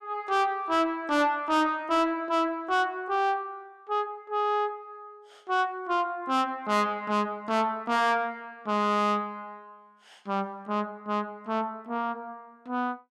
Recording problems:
distorted audio; soft clipping, signal-to-distortion ratio 8 dB

